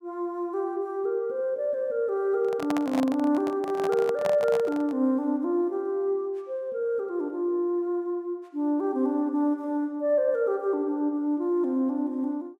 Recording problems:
microphone handling noise; from 2.5 to 5 s; peak -1 dB vs average level

